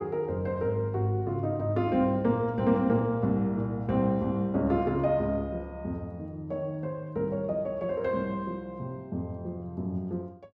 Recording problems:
none

